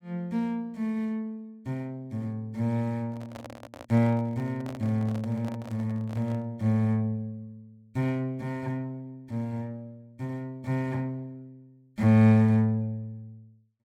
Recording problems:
microphone handling noise; from 3 to 6.5 s; peak -9 dB vs average level

